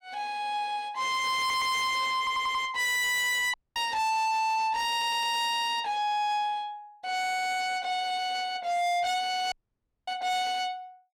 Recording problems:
distorted audio; soft clipping, signal-to-distortion ratio 6 dB
audio stuttering; at 1.5 s, at 2 s and at 5 s
dropout; at 3.5 s and at 9.5 s for 0.5 s

